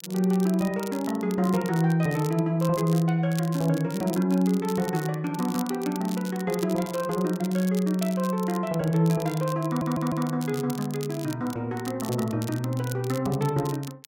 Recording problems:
crackling; vinyl, SNR 16 dB
audio stuttering; at 9.5 s

